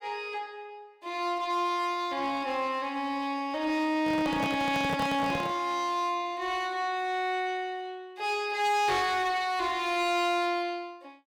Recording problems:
distorted audio; hard clipping, uneven, signal-to-distortion ratio 10 dB
handling noise; from 4 to 5.5 s; peak 0 dB vs average level

